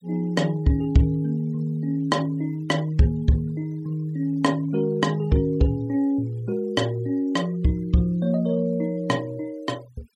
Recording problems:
denoising artefacts; signal-to-artefact ratio 27 dB

